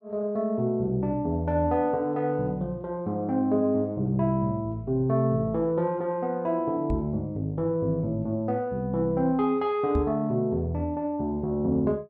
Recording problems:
microphone thump; at 7 s and at 10 s; peak +2 dB vs average level

